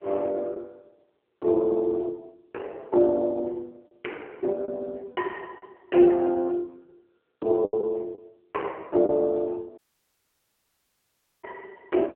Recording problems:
telephone audio; 300 Hz to 3 kHz, AMR-NB
lost packets; 4% of the sound replaced, filled with the last packet
dropout; at 10 s for 1.5 s

